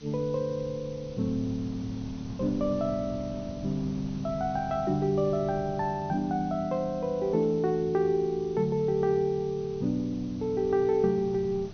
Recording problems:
treble missing; nothing above 6.3 kHz
background hiss; SNR 25 dB
wind noise; below 220 Hz, SNR 17 dB

